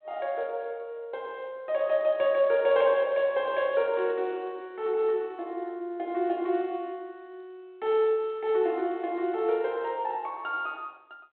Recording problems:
telephone audio; 280 Hz to 3.4 kHz, G.726

